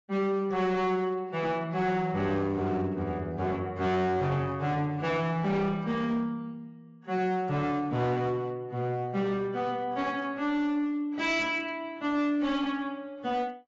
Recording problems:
lossy codec; AAC, log-spectral distance 2 dB, nothing above 7.3 kHz
distortion; hard clipping, uneven, signal-to-distortion ratio 11 dB

